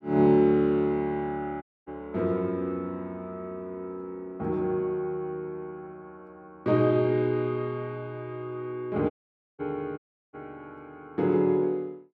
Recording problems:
dropout; at 1.5 s, at 9 s and at 10 s

